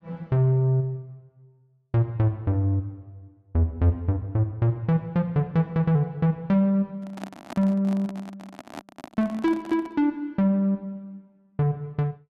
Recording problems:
handling noise; from 7 to 10 s; peak -8 dB vs average level

